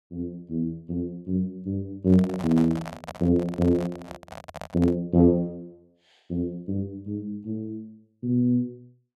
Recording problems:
handling noise; from 2 to 5 s; peak -6 dB vs average level

